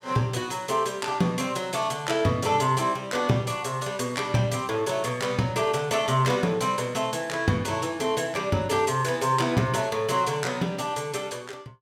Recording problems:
none

